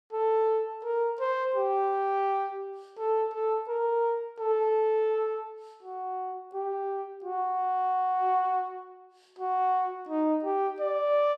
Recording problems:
none

